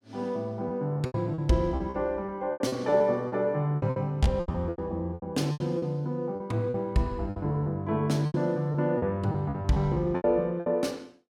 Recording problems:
lost packets; 14% of the sound replaced, filled with repeated pitch periods

